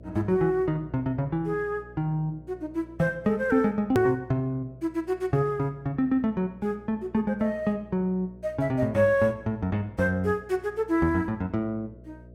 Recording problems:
hum; 60 Hz, harmonics up to 660 Hz, SNR 22 dB
edit click; at 4 s

